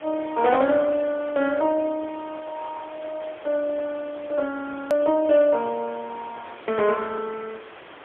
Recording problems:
phone line; 240 Hz to 2.7 kHz, AMR-NB, then MP3
hiss; SNR 18 dB
edit click; at 5 s

